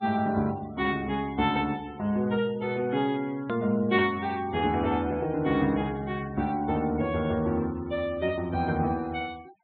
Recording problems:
treble missing; nothing above 4 kHz
noise reduction artefacts; signal-to-artefact ratio 23 dB
edit click; at 3.5 s

